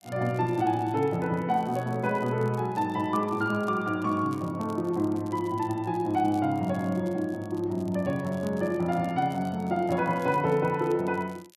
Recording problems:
crackle; vinyl, SNR 27 dB

